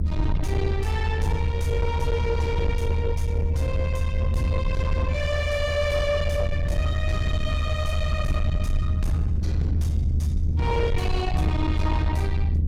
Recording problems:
distortion; soft clipping, signal-to-distortion ratio 10 dB
low-frequency rumble; below 84 Hz, strongest tone 78 Hz, SNR -3 dB

